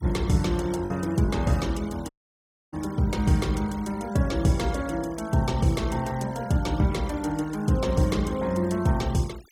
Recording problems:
noise reduction artefacts; signal-to-artefact ratio 21 dB
packet loss; 0.7% of the sound replaced, filled with the last packet
dropout; at 2 s for 0.5 s

